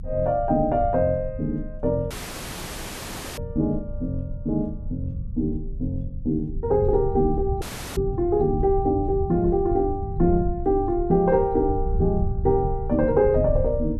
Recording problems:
rumble; below 96 Hz, strongest tone 28 Hz, SNR 8 dB
audio cutting out; at 2 s for 1.5 s and at 7.5 s

